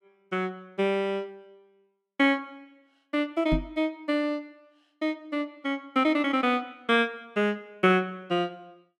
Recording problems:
microphone thump; at 3.5 s; peak +3 dB vs average level

